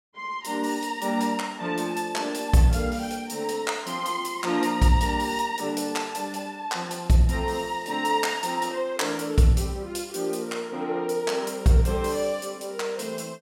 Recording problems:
none

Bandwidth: 16 kHz